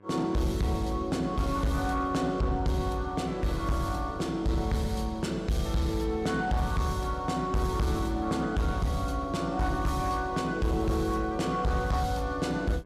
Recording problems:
distortion; soft clipping, signal-to-distortion ratio 11 dB
hum; 50 Hz, harmonics up to 2.2 kHz, SNR 27 dB

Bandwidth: 15.5 kHz